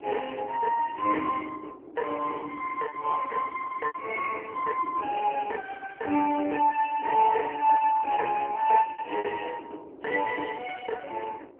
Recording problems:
telephone audio; 260 Hz to 2.5 kHz, AMR-NB
wind on the microphone; below 470 Hz, SNR 19 dB
packet loss; 3% of the sound replaced, filled with repeated pitch periods

